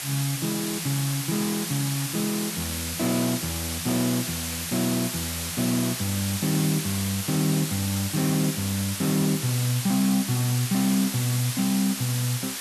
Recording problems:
background hiss; slope +2 dB per octave, SNR 3 dB

